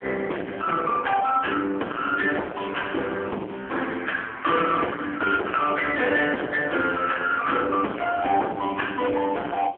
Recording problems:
phone line; 260 Hz to 3.3 kHz, AMR-NB
distortion; hard clipping, signal-to-distortion ratio 6 dB

